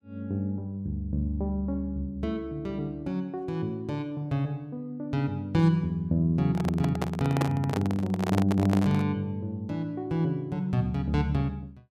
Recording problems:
handling noise; from 6.5 to 9 s; peak +3 dB vs average level

